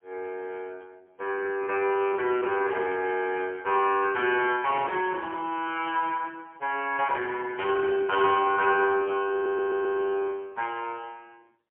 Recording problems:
phone line; 320 Hz to 3 kHz, AMR-NB, then MP3
audio stuttering; at 9.5 s

